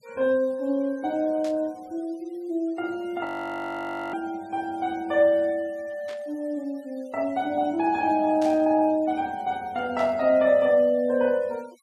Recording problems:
noise reduction artefacts; signal-to-artefact ratio 28 dB
burst of static; 4 times, first at 1.5 s; peak -12 dB vs average level
frozen audio; at 3.5 s for 1 s

